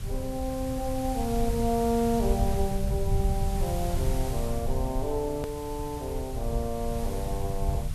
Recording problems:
hiss; slope -2 dB per octave, SNR 12 dB
low-frequency rumble; below 94 Hz, SNR 2 dB
edit click; at 5.5 s

